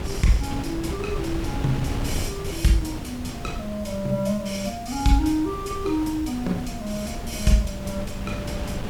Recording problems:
hiss; SNR 22 dB
wind noise; below 300 Hz, SNR 7 dB

